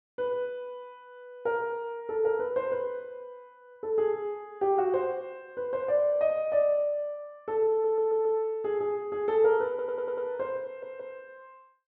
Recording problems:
stutter; at 7.5 s, at 9.5 s and at 11 s

